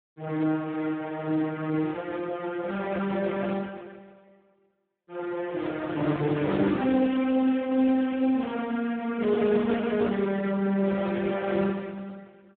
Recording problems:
telephone audio; 170 Hz to 3.5 kHz, Speex

